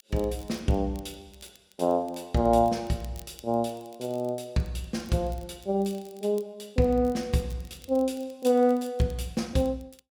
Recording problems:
crackling; vinyl, SNR 26 dB

